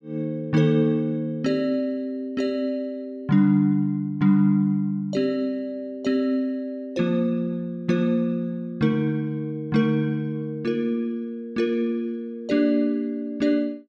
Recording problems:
none

